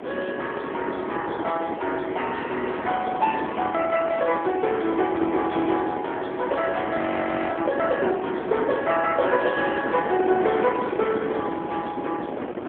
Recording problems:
phone line; 280 Hz to 3.4 kHz, AMR-NB
wind noise; below 660 Hz, SNR 6 dB
frozen audio; at 7 s for 0.5 s

